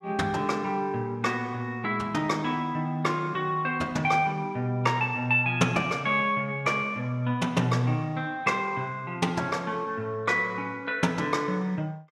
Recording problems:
none

